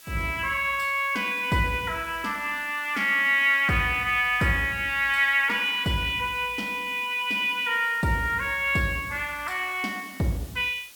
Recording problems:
hiss; slope +2 dB per octave, SNR 22 dB

